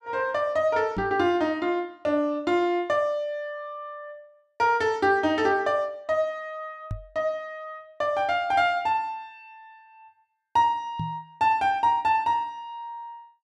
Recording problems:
microphone thump; at 1 s, at 7 s and at 11 s; peak -3 dB vs average level

